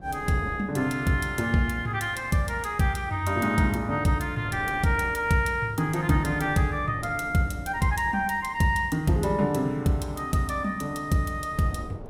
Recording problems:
wind noise; below 410 Hz, SNR 20 dB

